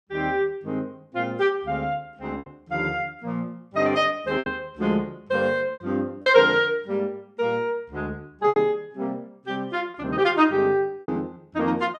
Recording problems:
packet loss; 5% of the sound replaced, filled with repeated pitch periods

